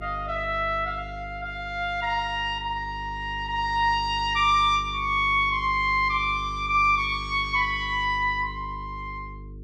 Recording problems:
hum; 50 Hz, harmonics up to 450 Hz, SNR 15 dB

